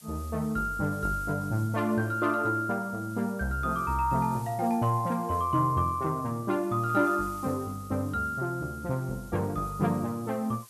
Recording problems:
background hiss; slope +1 dB per octave, SNR 22 dB

